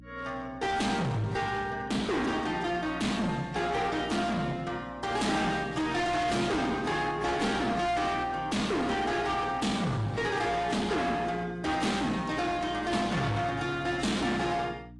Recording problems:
lossy compression; AAC, log-spectral distance 3 dB, nothing above 10.4 kHz
distortion; hard clipping, uneven, signal-to-distortion ratio 5 dB
hum; 60 Hz, harmonics up to 300 Hz, SNR 20 dB

